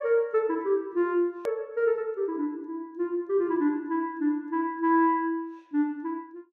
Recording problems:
edit click; at 1.5 s

